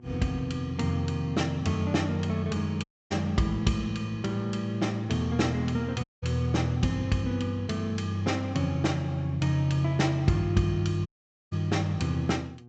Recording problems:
low-pass filter; nothing above 8 kHz
hum; 60 Hz, harmonics up to 840 Hz, SNR 23 dB
dropout; at 3 s, at 6 s and at 11 s

